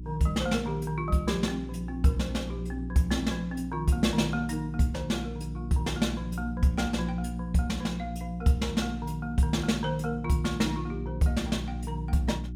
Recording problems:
hum; 60 Hz, harmonics up to 360 Hz, SNR 9 dB

